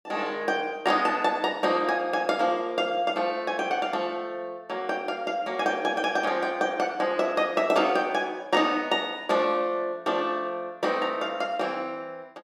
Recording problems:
none

